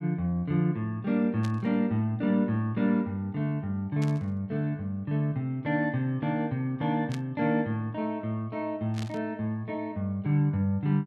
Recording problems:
static burst; 4 times, first at 1.5 s; peak -9 dB vs average level

